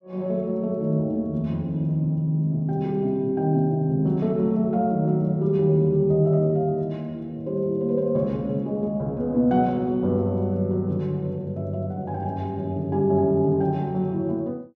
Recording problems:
none

